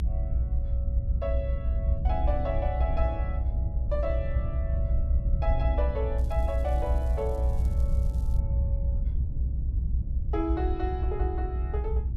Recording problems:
rumble; below 70 Hz, strongest tone 62 Hz, SNR -6 dB
crackle; from 6 to 8.5 s; loose cable, SNR 24 dB

